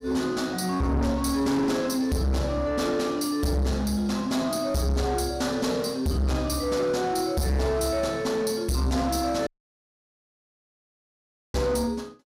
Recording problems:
distortion; soft clipping, signal-to-distortion ratio 7 dB
audio cutting out; at 9.5 s for 2 s

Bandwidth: 15.5 kHz